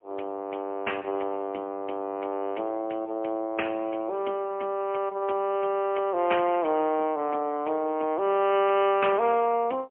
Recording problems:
phone line; 260 Hz to 3.2 kHz, AMR-NB, then MP3

